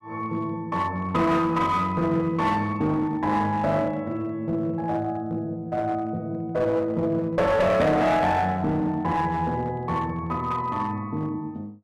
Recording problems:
distorted audio; hard clipping, uneven, signal-to-distortion ratio 10 dB

